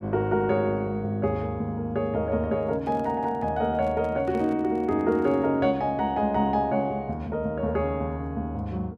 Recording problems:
handling noise; from 2.5 to 5.5 s; peak -12 dB vs average level

